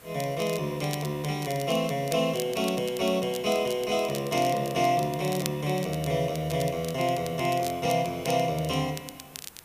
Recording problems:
hiss; slope -4 dB per octave, SNR 22 dB
crackle; vinyl, SNR 14 dB

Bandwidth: 15 kHz